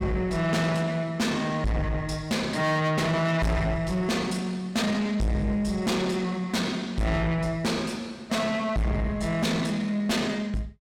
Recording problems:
distorted audio; soft clipping, signal-to-distortion ratio 6 dB

